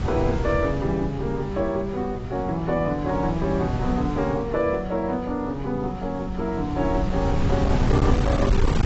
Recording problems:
lossy compression; AAC, log-spectral distance 2 dB, nothing above 7.6 kHz
distortion; hard clipping, uneven, signal-to-distortion ratio 10 dB
hum; 50 Hz, harmonics up to 500 Hz, SNR 22 dB
wind noise; below 180 Hz, SNR 3 dB

